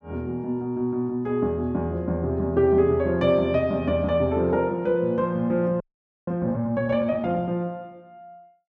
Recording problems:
audio freezing; at 6 s

